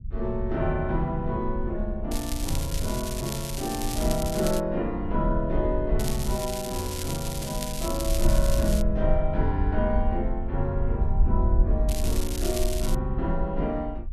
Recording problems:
low-frequency rumble; below 58 Hz, SNR 2 dB
crackling; from 2 to 4.5 s, from 6 to 9 s and from 12 to 13 s; loose cable, SNR 6 dB

